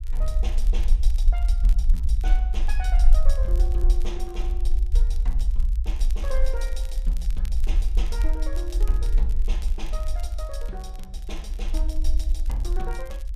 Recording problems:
low-frequency rumble; below 46 Hz, SNR -13 dB
crackle; vinyl, SNR 14 dB

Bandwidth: 14 kHz